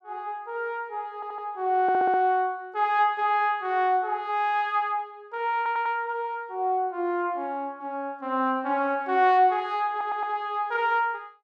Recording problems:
stutter; 4 times, first at 1 s

